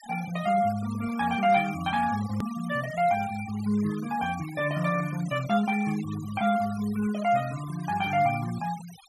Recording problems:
denoising artefacts; signal-to-artefact ratio 17 dB
edit click; at 2.5 s

